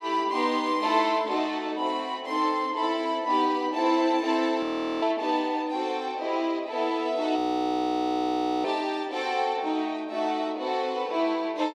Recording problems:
frozen audio; at 4.5 s and at 7.5 s for 1.5 s

